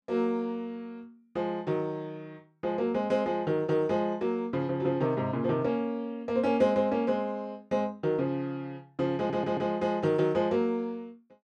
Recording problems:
audio stuttering; at 9 s

